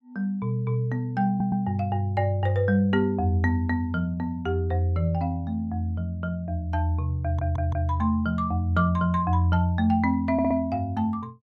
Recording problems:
stutter; at 1.5 s, at 7 s and at 10 s

